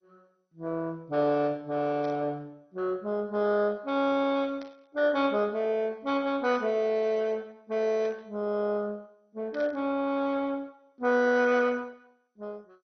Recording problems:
lossy compression; MP2, log-spectral distance 3 dB, nothing above 5.2 kHz
static burst; 5 times, first at 2 s; peak -16 dB vs average level

